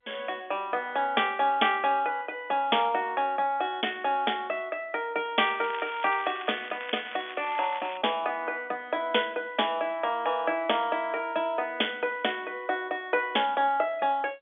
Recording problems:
phone line; 260 Hz to 3.5 kHz, G.711
crackling; from 5.5 to 8 s; loose cable, SNR 14 dB

